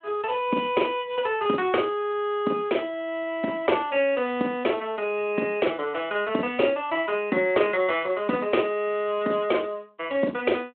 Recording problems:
telephone audio; 190 Hz to 3.4 kHz, Speex

